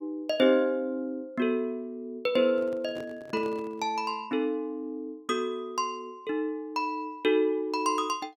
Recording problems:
microphone handling noise; from 2.5 to 4 s; peak -10 dB vs average level

